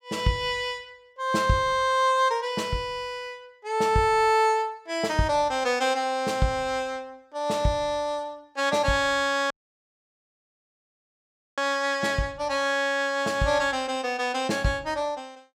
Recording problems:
audio cutting out; at 9.5 s for 2 s

